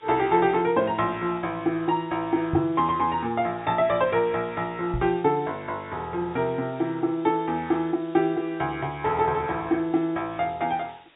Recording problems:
treble cut off; nothing above 4 kHz
hiss; SNR 27 dB
microphone bump; at 2.5 s and at 5 s; peak +1 dB vs average level

